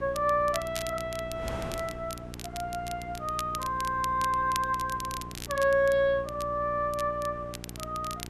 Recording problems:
hum; 60 Hz, harmonics up to 840 Hz, SNR 14 dB
wind noise; below 830 Hz, SNR 18 dB
crackle; vinyl, SNR 13 dB

